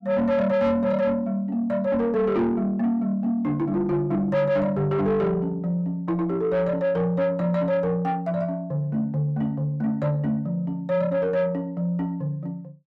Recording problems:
distorted audio; soft clipping, signal-to-distortion ratio 11 dB

